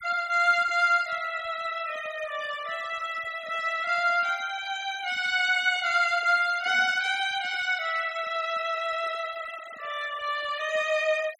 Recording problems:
denoising artefacts; signal-to-artefact ratio 19 dB

